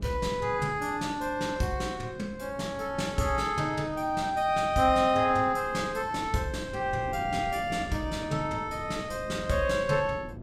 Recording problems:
wind on the microphone; below 290 Hz, SNR 15 dB

